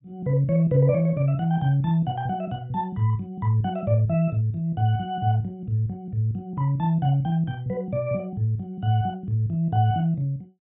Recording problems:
treble cut off; nothing above 4 kHz

